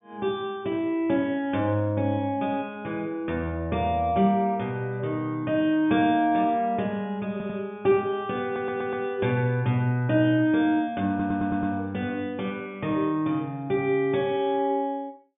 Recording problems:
low-pass filter; nothing above 3.6 kHz
stutter; at 7.5 s, at 8.5 s and at 11 s

